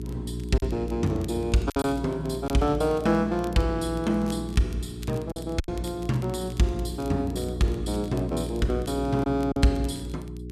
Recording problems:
hum; 60 Hz, harmonics up to 420 Hz, SNR 9 dB
crackle; vinyl, SNR 24 dB
lost packets; 3% of the sound replaced, filled with silence

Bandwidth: 13.5 kHz